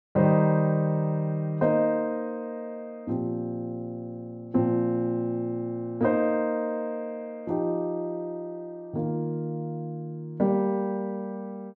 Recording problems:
none

